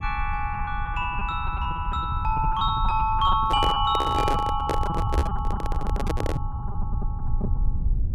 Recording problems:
rumble; below 86 Hz, SNR 5 dB
lost packets; 15% of the sound replaced, filled with repeated pitch periods
microphone handling noise; from 3.5 to 6.5 s; peak +3 dB vs average level

